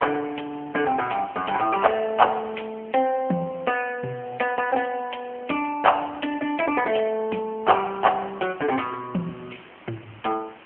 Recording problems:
phone line; 220 Hz to 2.8 kHz, AMR-NB
hiss; SNR 27 dB
wind on the microphone; below 1.9 kHz, SNR 23 dB

